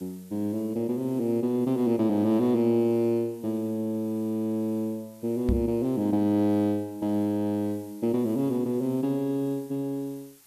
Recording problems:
hiss; slope +1 dB per octave, SNR 27 dB
microphone bump; at 5.5 s; peak +3 dB vs average level

